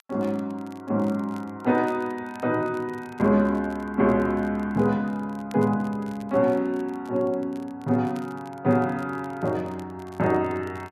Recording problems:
crackling; vinyl, SNR 29 dB

